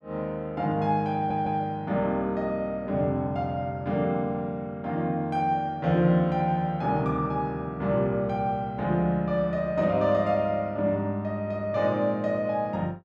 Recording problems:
audio stuttering; at 1 s

